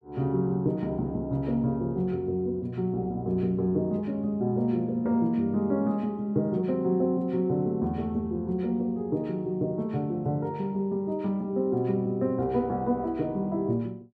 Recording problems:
none

